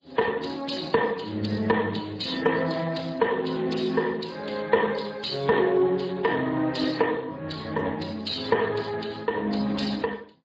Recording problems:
lossy codec; MP3, then Speex, log-spectral distance 10 dB

